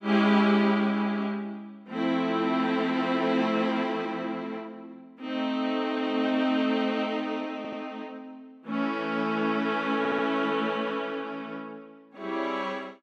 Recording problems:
stutter; at 7.5 s and at 10 s

